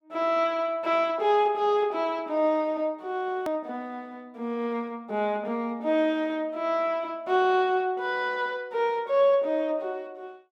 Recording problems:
click at an edit; at 3.5 s

